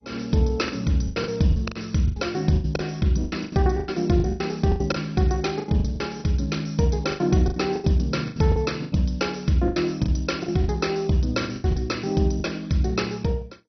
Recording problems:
lossy codec; MP2, log-spectral distance 6 dB, nothing above 6 kHz
lost packets; 15% of the sound replaced, filled with the last packet

